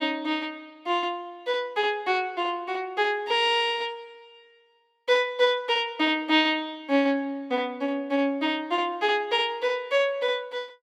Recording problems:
none

